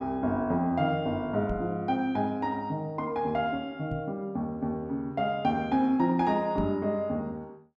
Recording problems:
knock on the microphone; at 1.5 s, at 4 s and at 6.5 s; peak -1 dB vs average level

